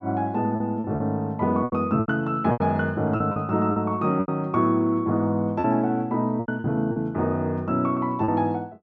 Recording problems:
packet loss; 9% of the sound replaced, filled with repeated pitch periods

